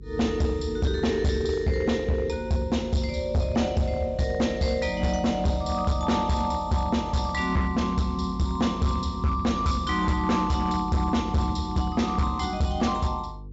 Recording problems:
treble cut off; nothing above 8 kHz
distortion; hard clipping, uneven, signal-to-distortion ratio 10 dB
mains hum; 50 Hz, harmonics up to 450 Hz, SNR 17 dB

